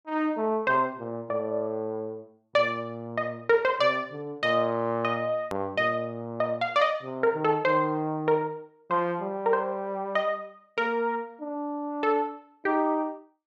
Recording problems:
hard cut with a click; at 5.5 s

